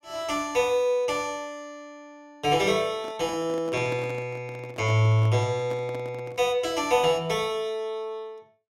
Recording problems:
microphone handling noise; from 3 to 6.5 s; peak -7 dB vs average level

